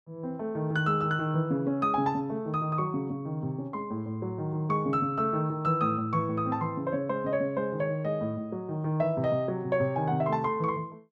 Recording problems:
none

